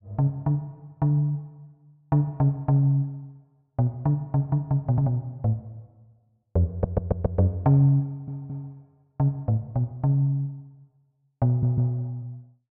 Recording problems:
audio stuttering; at 6.5 s, at 8 s and at 11 s

